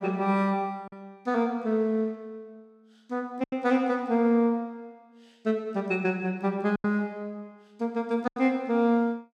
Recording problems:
lost packets; 4% of the sound replaced, filled with silence

